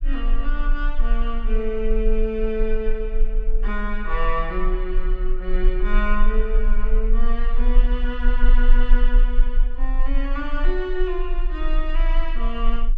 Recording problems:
rumble; below 32 Hz, strongest tone 22 Hz, SNR -4 dB

